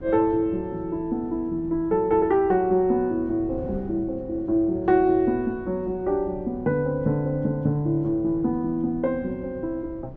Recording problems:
wind on the microphone; below 270 Hz, SNR 18 dB

